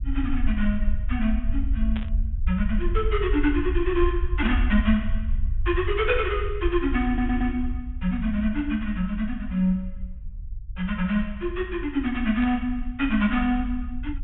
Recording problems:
low-pass filter; nothing above 3.6 kHz
low-frequency rumble; below 62 Hz, SNR 5 dB
burst of static; at 2 s, at 4.5 s and at 12 s; peak -8 dB vs average level
stutter; at 7 s

